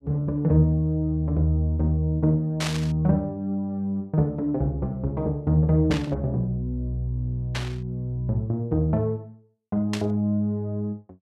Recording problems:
burst of static; 4 times, first at 2.5 s; peak -1 dB vs average level

